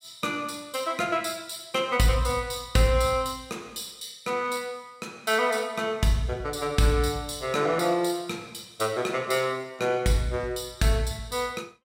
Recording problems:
none

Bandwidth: 16 kHz